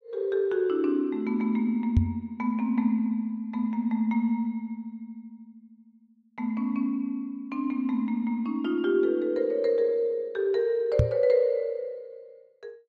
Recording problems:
knock on the microphone; at 2 s and at 11 s; peak +9 dB vs average level

